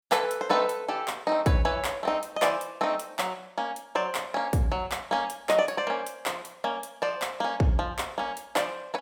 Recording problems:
none

